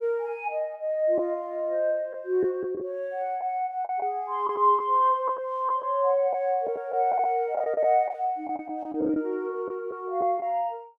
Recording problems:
packet loss; 6% of the sound replaced, filled with the last packet

